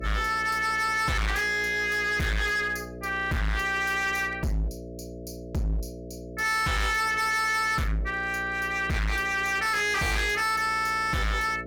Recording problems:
distortion; hard clipping, signal-to-distortion ratio 6 dB
hum; 60 Hz, harmonics up to 660 Hz, SNR 15 dB

